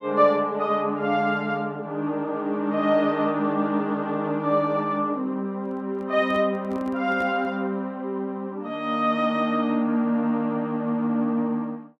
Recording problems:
microphone handling noise; from 5.5 to 7.5 s; peak -10 dB vs average level

